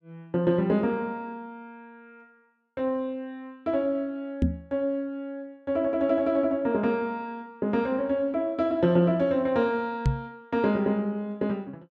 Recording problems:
microphone thump; at 4.5 s and at 10 s; peak +7 dB vs average level

